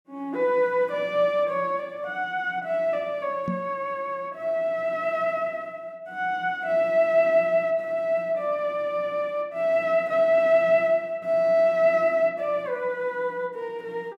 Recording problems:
microphone thump; at 3.5 s; peak -1 dB vs average level

